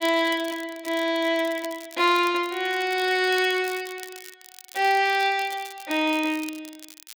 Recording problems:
crackling; vinyl, SNR 19 dB

